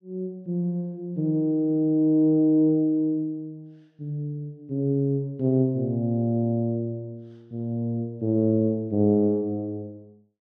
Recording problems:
none

